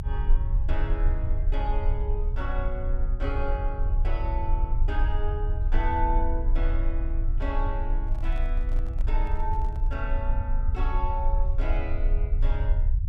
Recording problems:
low-frequency rumble; below 50 Hz, strongest tone 28 Hz, SNR -7 dB
microphone handling noise; from 8 to 10 s; peak -9 dB vs average level

